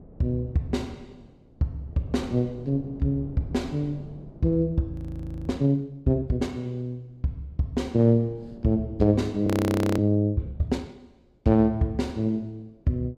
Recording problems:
wind on the microphone; below 310 Hz, SNR 21 dB
frozen audio; at 5 s for 0.5 s and at 9.5 s for 0.5 s

